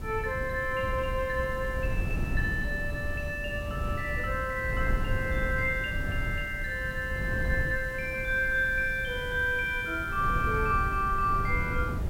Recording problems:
background hiss; slope 0 dB per octave, SNR 23 dB
wind noise; below 130 Hz, SNR 5 dB

